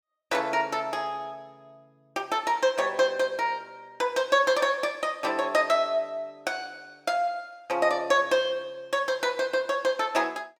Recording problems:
none

